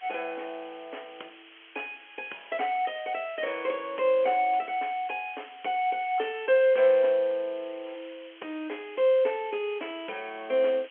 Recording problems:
telephone audio; 280 Hz to 3.3 kHz, G.711
hiss; SNR 22 dB

